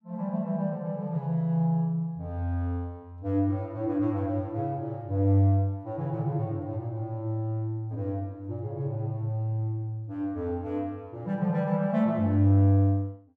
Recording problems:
none

